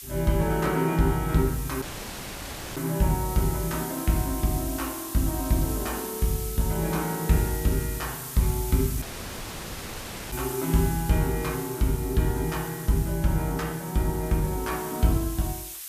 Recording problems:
hiss; slope +4 dB per octave, SNR 10 dB
audio cutting out; at 2 s for 1 s and at 9 s for 1.5 s

